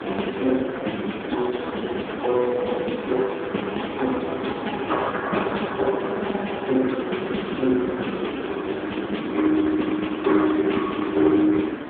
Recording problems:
phone line; 220 Hz to 3.5 kHz, AMR-NB
hiss; SNR 8 dB

